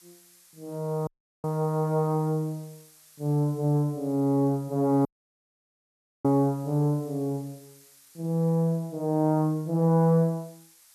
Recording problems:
hiss; slope +4 dB per octave, SNR 27 dB
audio cutting out; at 1 s and at 5 s for 1 s

